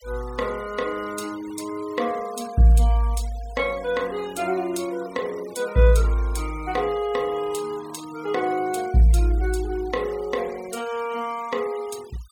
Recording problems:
noise reduction artefacts; signal-to-artefact ratio 21 dB

